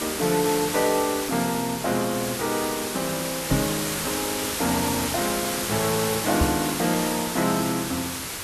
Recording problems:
hiss; slope -1 dB per octave, SNR 2 dB
microphone bump; at 3.5 s and at 6.5 s; peak +6 dB vs average level

